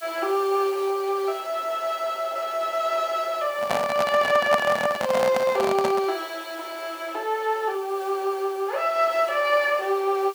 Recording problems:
background hiss; slope +4 dB per octave, SNR 22 dB
microphone handling noise; from 3.5 to 6 s; peak +4 dB vs average level

